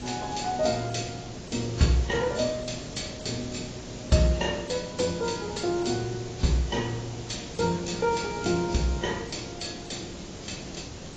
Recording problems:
lossy codec; AAC, log-spectral distance 13 dB, nothing above 7.6 kHz
hiss; SNR 11 dB

